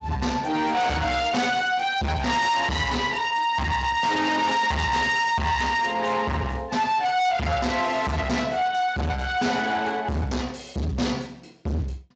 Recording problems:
lossy codec; Speex, log-spectral distance 4 dB, nothing above 7.3 kHz
distorted audio; hard clipping, uneven, signal-to-distortion ratio 5 dB

